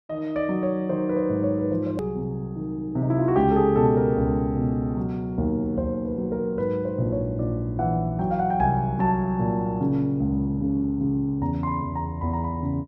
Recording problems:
edit click; at 2 s

